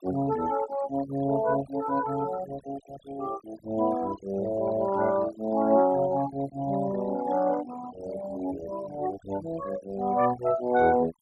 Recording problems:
denoising artefacts; signal-to-artefact ratio 15 dB

